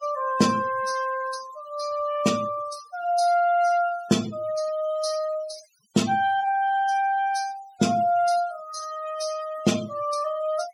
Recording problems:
noise reduction artefacts; signal-to-artefact ratio 15 dB

